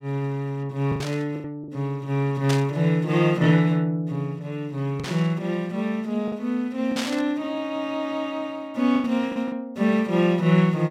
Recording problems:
packet loss; 4% of the sound replaced, filled with the last packet
static burst; 4 times, first at 1 s; peak -1 dB vs average level

